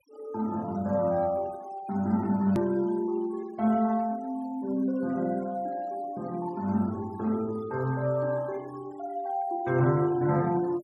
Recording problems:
noise reduction artefacts; signal-to-artefact ratio 24 dB
hard cut with a click; at 2.5 s

